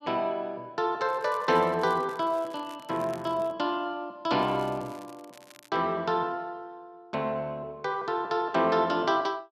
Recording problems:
crackling; from 1 to 3.5 s and from 4.5 to 5.5 s; loose cable, SNR 25 dB

